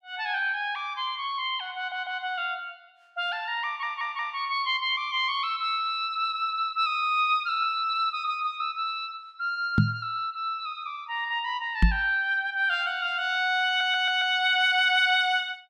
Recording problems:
audio stuttering; at 2 s, at 3.5 s and at 14 s
microphone thump; at 10 s and at 12 s; peak +9 dB vs average level

